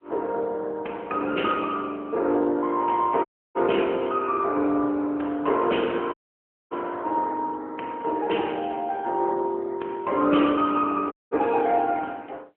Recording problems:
phone line; 260 Hz to 3.3 kHz, AMR-NB
audio cutting out; at 3.5 s, at 6 s for 0.5 s and at 11 s

